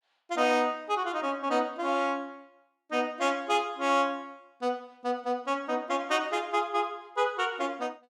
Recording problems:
none

